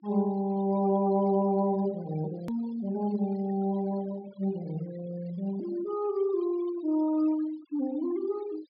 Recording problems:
low-pass filter; nothing above 5.2 kHz
denoising artefacts; signal-to-artefact ratio 21 dB
click at an edit; at 2.5 s

